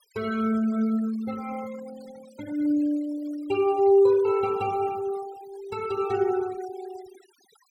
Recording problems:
denoising artefacts; signal-to-artefact ratio 22 dB

